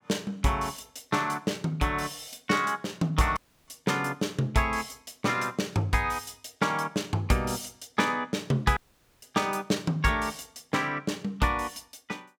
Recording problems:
dropout; at 3.5 s and at 9 s

